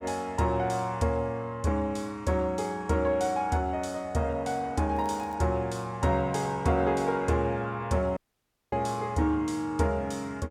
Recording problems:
crackling; at 5 s; loose cable, SNR 30 dB
dropout; at 8 s for 0.5 s

